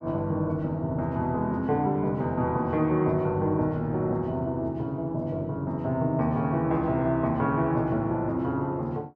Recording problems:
none

